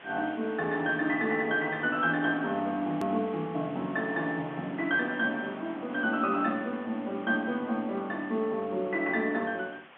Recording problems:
telephone audio; 170 Hz to 3.5 kHz, G.711
hiss; SNR 19 dB
edit click; at 3 s

